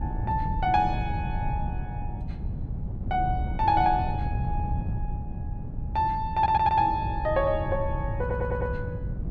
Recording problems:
wind noise; below 130 Hz, SNR 5 dB
audio stuttering; at 6.5 s and at 8 s

